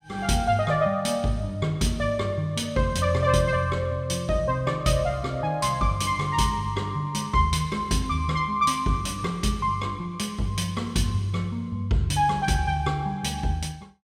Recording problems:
none

